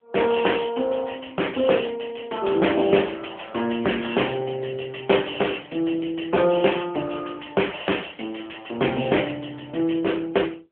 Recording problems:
telephone audio; 220 Hz to 3.3 kHz, AMR-NB

